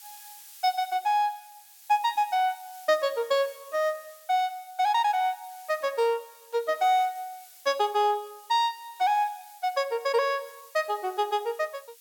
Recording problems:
background hiss; slope +5 dB per octave, SNR 22 dB

